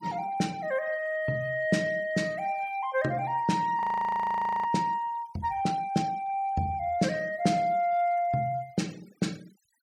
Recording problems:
noise reduction artefacts; signal-to-artefact ratio 24 dB
audio freezing; at 4 s for 1 s

